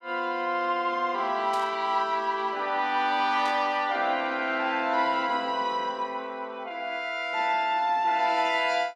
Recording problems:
burst of static; at 1.5 s and at 3.5 s; peak -9 dB vs average level

